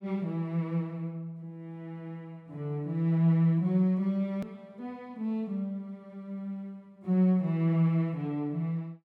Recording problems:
click at an edit; at 4.5 s

